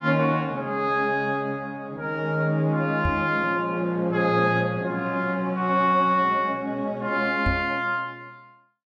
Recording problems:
microphone bump; at 3 s and at 7.5 s; peak +1 dB vs average level

